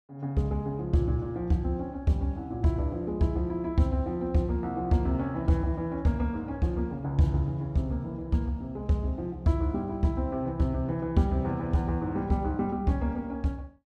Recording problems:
none

